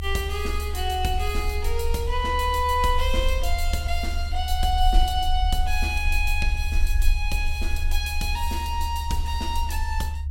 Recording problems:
low-frequency rumble; below 72 Hz, SNR 1 dB

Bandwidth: 16 kHz